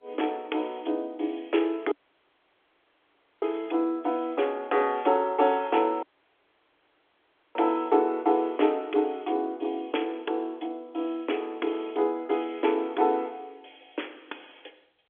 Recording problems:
telephone audio; 260 Hz to 3.5 kHz, G.711
audio cutting out; at 2 s for 1.5 s and at 6 s for 1.5 s

